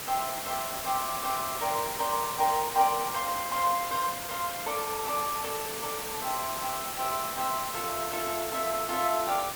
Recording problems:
background hiss; slope -2 dB per octave, SNR 4 dB

